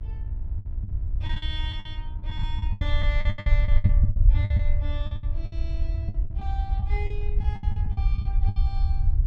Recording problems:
hum; 60 Hz, harmonics up to 1.4 kHz, SNR 13 dB
rumble; below 72 Hz, SNR -12 dB
packet loss; 17% of the sound replaced, filled with the last packet

